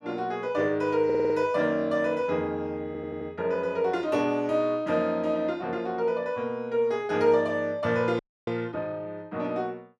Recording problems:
stutter; at 1 s and at 3 s
frozen audio; at 8 s

